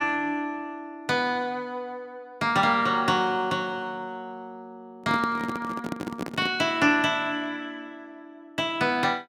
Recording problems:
microphone handling noise; from 5 to 6.5 s; peak -1 dB vs average level

